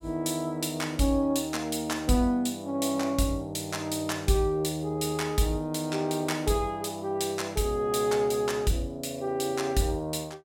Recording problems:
none

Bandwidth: 17 kHz